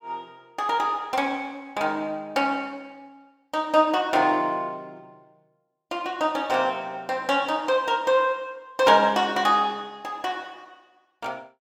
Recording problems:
none

